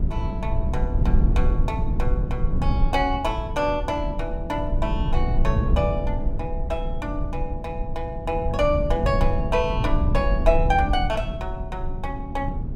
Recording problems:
low-frequency rumble; below 94 Hz, SNR -1 dB

